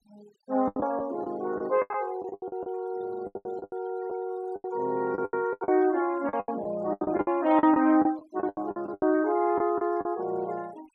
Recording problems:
noise reduction artefacts; signal-to-artefact ratio 24 dB
packet loss; 17% of the sound replaced, filled with the last packet

